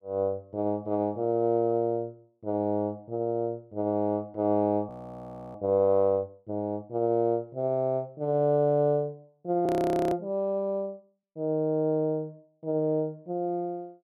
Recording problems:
frozen audio; at 5 s for 0.5 s and at 9.5 s

